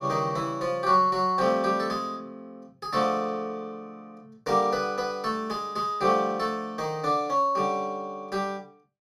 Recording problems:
none

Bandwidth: 15 kHz